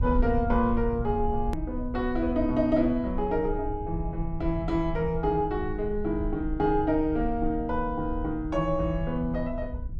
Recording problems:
low-frequency rumble; below 68 Hz, SNR 8 dB
click at an edit; at 1.5 s

